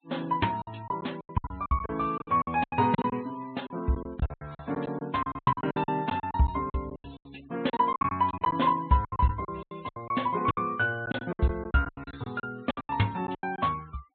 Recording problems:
treble missing; nothing above 4 kHz
denoising artefacts; signal-to-artefact ratio 25 dB
packet loss; 19% of the sound replaced, filled with silence

